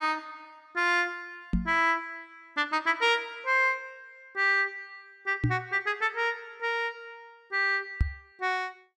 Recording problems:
microphone thump; at 1.5 s, at 5.5 s and at 8 s; peak +5 dB vs average level

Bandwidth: 12.5 kHz